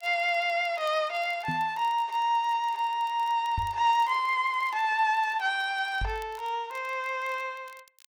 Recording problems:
crackle; vinyl, SNR 29 dB
knock on the microphone; at 1.5 s, at 3.5 s and at 6 s; peak -3 dB vs average level

